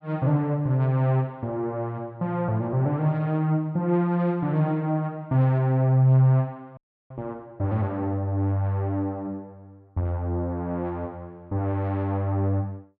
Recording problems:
audio freezing; at 7 s

